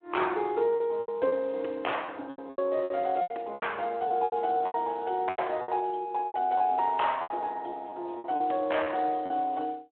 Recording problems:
telephone audio; 260 Hz to 3.3 kHz, Speex
packet loss; 13% of the sound replaced, filled with repeated pitch periods

